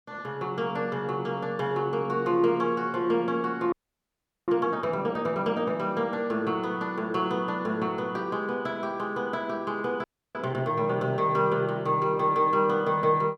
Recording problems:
frozen audio; at 3.5 s for 1 s and at 10 s

